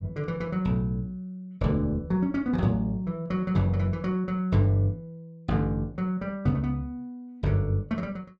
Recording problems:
none

